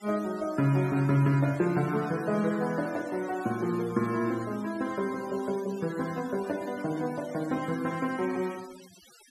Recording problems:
denoising artefacts; signal-to-artefact ratio 19 dB

